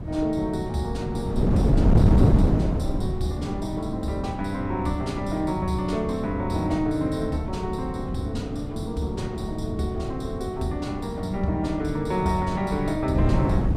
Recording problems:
wind noise; below 230 Hz, SNR 0 dB

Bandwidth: 15 kHz